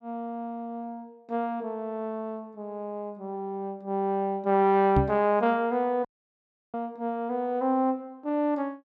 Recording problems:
microphone bump; at 5 s; peak +7 dB vs average level
audio cutting out; at 6 s for 0.5 s

